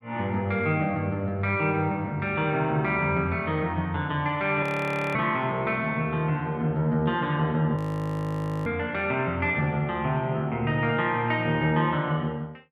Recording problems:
audio freezing; at 4.5 s for 0.5 s and at 8 s for 1 s

